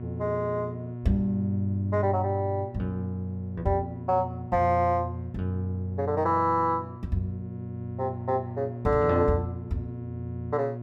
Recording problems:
hum; 60 Hz, harmonics up to 720 Hz, SNR 11 dB

